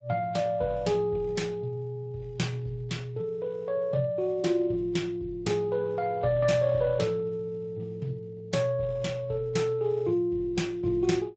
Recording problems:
codec artefacts; Speex, log-spectral distance 2 dB, nothing above 7.8 kHz

